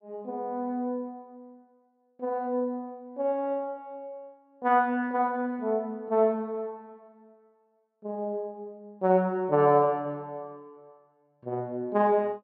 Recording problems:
none

